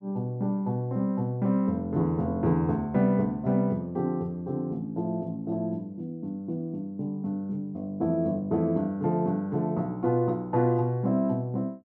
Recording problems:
none

